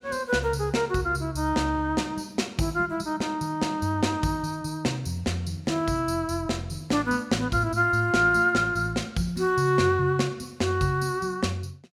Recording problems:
none

